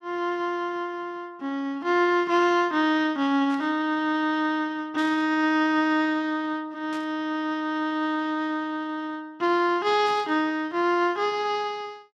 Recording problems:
burst of static; 4 times, first at 3.5 s; peak -15 dB vs average level

